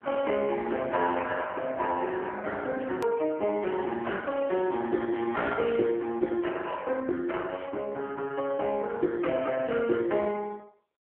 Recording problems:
telephone audio; 300 Hz to 3.3 kHz, AMR-NB
edit click; at 3 s

